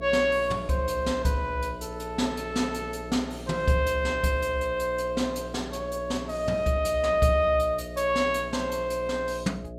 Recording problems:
hum; 60 Hz, harmonics up to 660 Hz, SNR 13 dB

